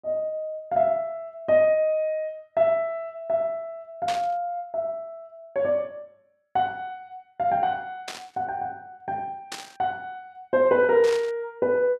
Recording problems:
static burst; 4 times, first at 4 s; peak -3 dB vs average level

